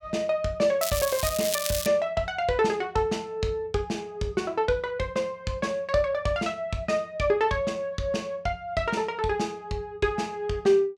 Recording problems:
crackle; from 1 to 2 s; loose cable, SNR 3 dB

